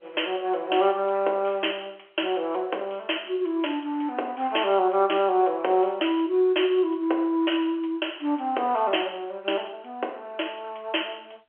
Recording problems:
telephone audio; 340 Hz to 3.2 kHz, G.711

